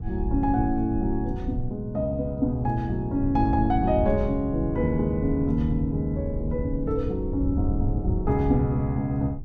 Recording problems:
wind on the microphone; below 98 Hz, SNR 6 dB

